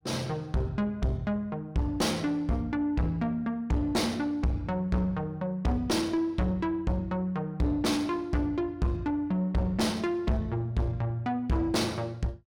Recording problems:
distortion; soft clipping, signal-to-distortion ratio 5 dB

